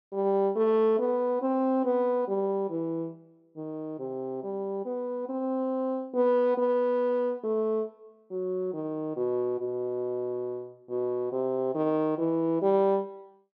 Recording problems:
none

